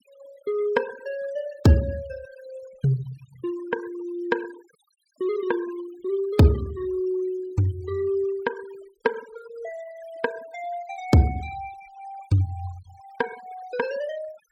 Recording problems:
noise reduction artefacts; signal-to-artefact ratio 20 dB

